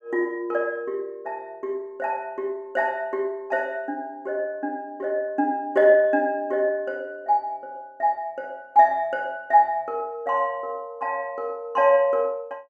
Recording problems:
none

